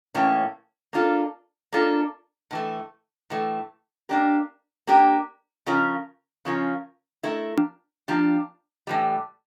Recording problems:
click at an edit; at 7.5 s

